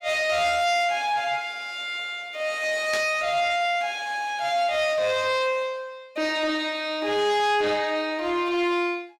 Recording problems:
distortion; soft clipping, signal-to-distortion ratio 11 dB
static burst; at 3 s; peak -3 dB vs average level

